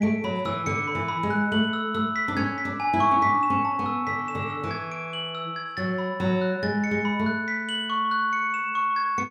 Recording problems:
none

